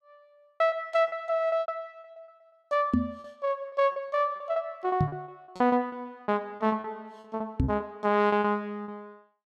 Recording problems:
lost packets; 18% of the sound replaced, filled with repeated pitch periods
microphone thump; at 3 s, at 5 s and at 7.5 s; peak +7 dB vs average level

